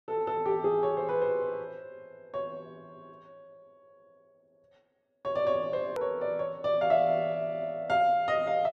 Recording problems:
edit click; at 6 s

